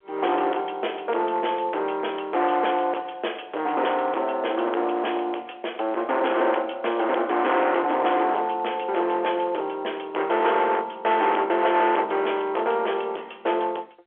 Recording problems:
phone line; 320 Hz to 3.4 kHz, G.711
distorted audio; hard clipping, uneven, signal-to-distortion ratio 8 dB

